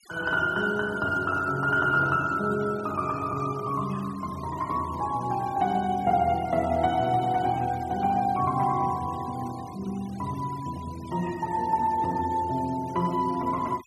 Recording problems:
denoising artefacts; signal-to-artefact ratio 21 dB

